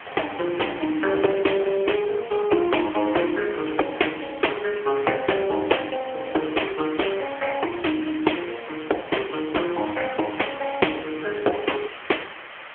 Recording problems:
telephone audio; 280 Hz to 3.3 kHz, AMR-NB
background hiss; SNR 14 dB

